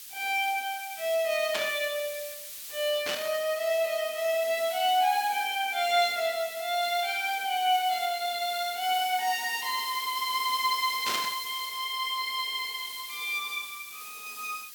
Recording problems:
background hiss; SNR 11 dB
static burst; at 1.5 s, at 3 s and at 11 s; peak +1 dB vs average level

